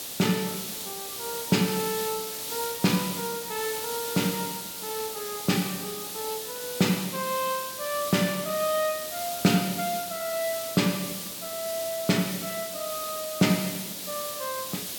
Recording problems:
hiss; SNR 4 dB

